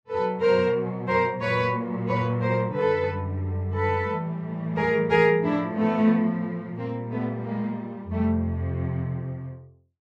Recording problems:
none

